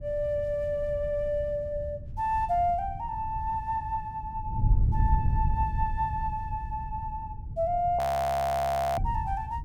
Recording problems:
wind noise; below 100 Hz, SNR 4 dB
frozen audio; at 8 s for 1 s

